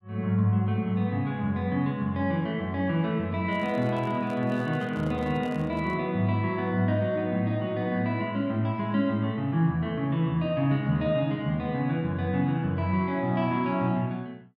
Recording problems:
microphone handling noise; from 3.5 to 6 s; peak -12 dB vs average level

